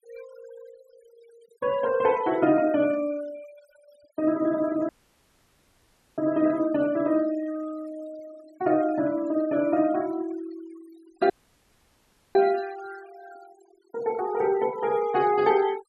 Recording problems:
noise reduction artefacts; signal-to-artefact ratio 21 dB
dropout; at 5 s for 1.5 s and at 11 s for 1 s

